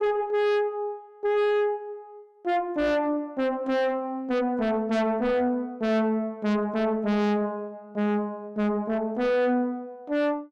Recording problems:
distortion; soft clipping, signal-to-distortion ratio 6 dB

